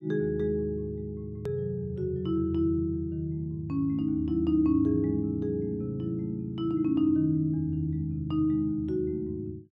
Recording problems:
hard cut with a click; at 1.5 s

